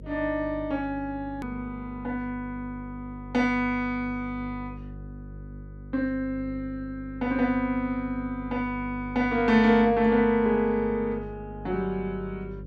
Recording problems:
hum; 50 Hz, harmonics up to 550 Hz, SNR 15 dB
click at an edit; at 1.5 s

